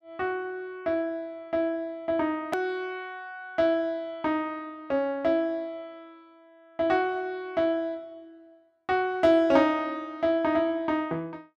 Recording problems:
click at an edit; at 2.5 s

